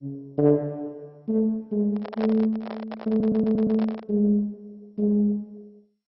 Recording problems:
codec artefacts; MP2, log-spectral distance 2 dB
microphone handling noise; from 2 to 4 s; peak -4 dB vs average level
stutter; at 3 s

